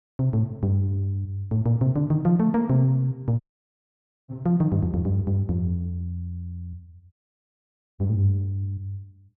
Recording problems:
audio cutting out; at 3.5 s for 1 s and at 7 s for 1 s

